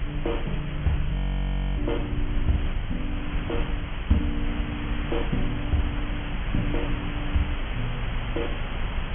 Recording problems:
low-pass filter; nothing above 3.3 kHz
hum; 50 Hz, harmonics up to 900 Hz, SNR 16 dB
background hiss; SNR 6 dB
rumble; below 64 Hz, strongest tone 26 Hz, SNR 2 dB
audio freezing; at 1 s for 0.5 s

